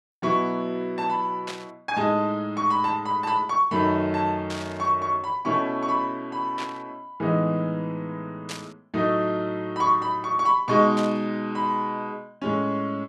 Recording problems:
static burst; 5 times, first at 1.5 s; peak -5 dB vs average level

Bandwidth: 12 kHz